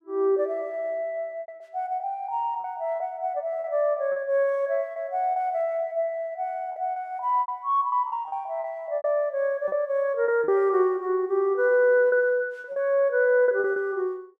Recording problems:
lost packets; 8% of the sound replaced, filled with repeated pitch periods

